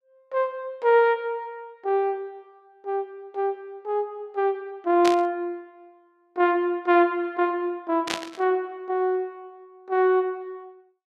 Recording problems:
burst of static; at 5 s and at 8 s; peak +1 dB vs average level

